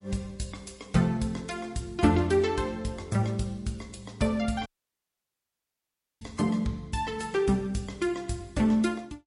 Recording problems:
lossy compression; MP3, log-spectral distance 3 dB, nothing above 10.4 kHz
audio cutting out; at 4.5 s for 1.5 s

